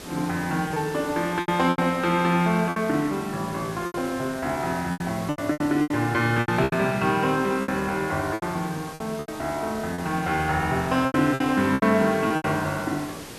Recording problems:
hiss; slope -4 dB per octave, SNR 15 dB
packet loss; 11% of the sound replaced, filled with repeated pitch periods

